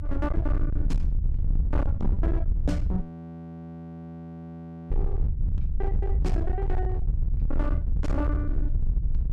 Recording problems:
distorted audio; hard clipping, signal-to-distortion ratio 7 dB
rumble; below 74 Hz, SNR -6 dB
audio freezing; at 3 s for 2 s

